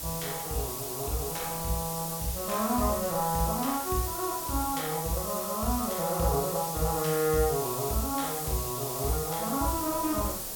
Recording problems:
background hiss; SNR 3 dB
wind on the microphone; below 790 Hz, SNR 19 dB

